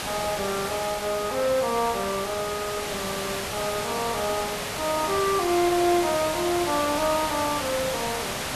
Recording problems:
background hiss; SNR 3 dB

